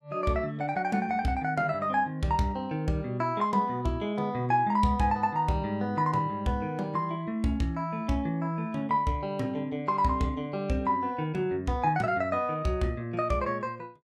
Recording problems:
none

